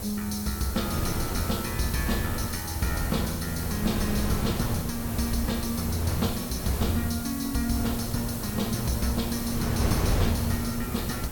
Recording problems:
background hiss; SNR 8 dB
wind on the microphone; below 350 Hz, SNR 3 dB

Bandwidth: 17.5 kHz